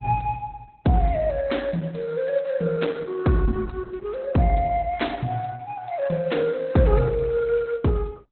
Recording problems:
lossy codec; Opus, log-spectral distance 4 dB, nothing above 4 kHz

